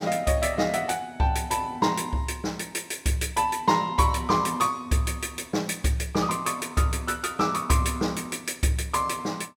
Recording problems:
none

